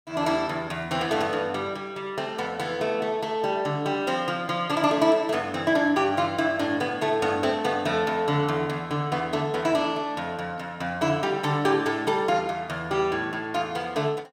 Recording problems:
none

